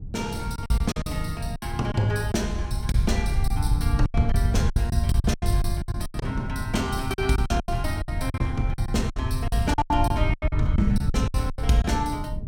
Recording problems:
rumble; below 100 Hz, SNR 0 dB
wind on the microphone; below 160 Hz, SNR 9 dB
packet loss; 15% of the sound replaced, filled with silence

